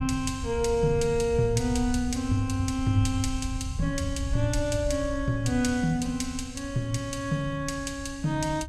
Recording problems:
rumble; below 96 Hz, SNR 8 dB

